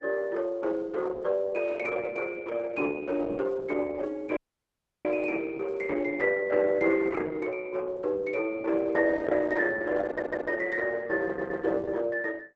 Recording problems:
lossy codec; Opus, log-spectral distance 4 dB, nothing above 7.8 kHz
dropout; at 4.5 s for 0.5 s
audio stuttering; at 10 s and at 11 s

